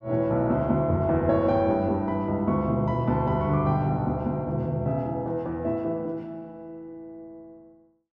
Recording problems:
none

